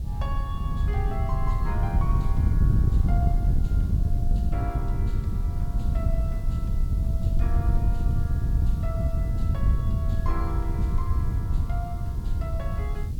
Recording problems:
hiss; slope +3 dB per octave, SNR 16 dB
wind on the microphone; below 100 Hz, SNR -12 dB

